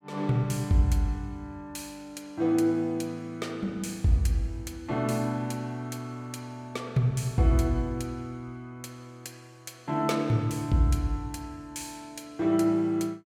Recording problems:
none

